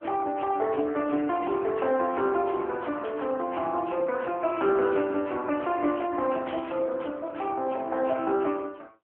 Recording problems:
telephone audio; 260 Hz to 3.3 kHz, AMR-NB
burst of static; at 3 s and at 6.5 s; peak -10 dB vs average level

